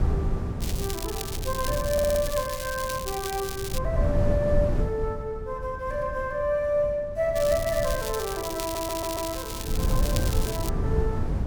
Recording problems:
wind noise; below 130 Hz, SNR 3 dB
crackle; from 0.5 to 4 s and from 7.5 to 11 s; loose cable, SNR 7 dB
stutter; at 2 s and at 8.5 s

